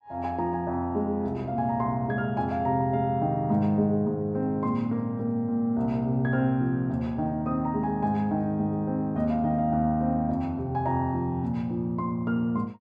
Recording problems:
none

